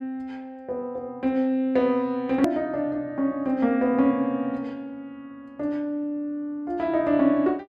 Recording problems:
hard cut with a click; at 2.5 s

